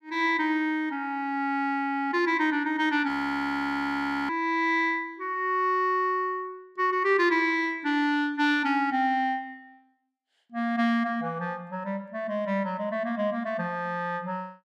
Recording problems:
audio freezing; at 3 s for 1 s

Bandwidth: 14.5 kHz